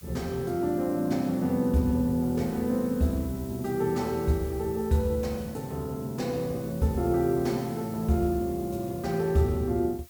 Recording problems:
background hiss; SNR 20 dB

